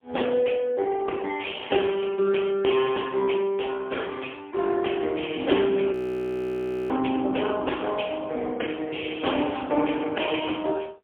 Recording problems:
telephone audio; 220 Hz to 3.4 kHz, AMR-NB, then MP3
audio freezing; at 6 s for 1 s

